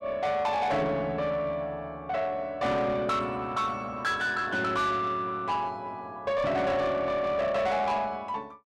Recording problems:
distortion; soft clipping, signal-to-distortion ratio 10 dB

